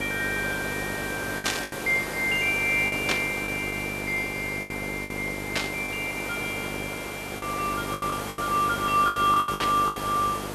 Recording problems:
hum; 50 Hz, harmonics up to 1.4 kHz, SNR 11 dB
hiss; slope -5 dB per octave, SNR 8 dB
lost packets; 9% of the sound replaced, filled with the last packet
static burst; 4 times, first at 1.5 s; peak +5 dB vs average level

